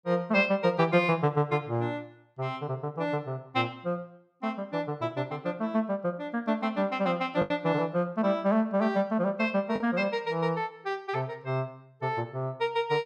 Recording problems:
lost packets; 1% of the sound replaced, filled with the last packet

